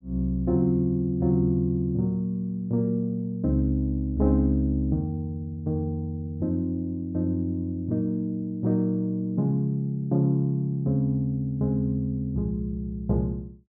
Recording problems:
none

